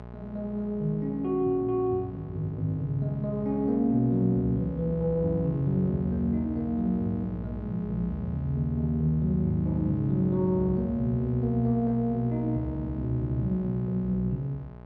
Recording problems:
mains hum; 60 Hz, harmonics up to 1.5 kHz, SNR 15 dB

